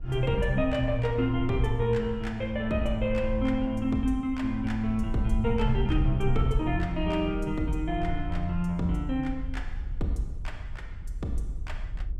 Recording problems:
wind noise; below 60 Hz, SNR 8 dB

